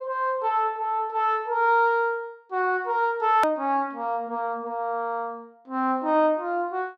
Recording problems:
click at an edit; at 3.5 s

